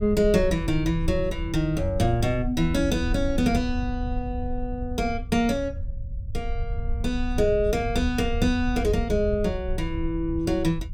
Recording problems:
low-frequency rumble; below 76 Hz, SNR 7 dB

